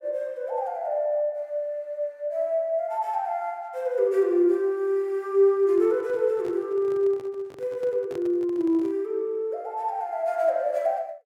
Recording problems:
handling noise; from 5.5 to 9 s; peak -11 dB vs average level

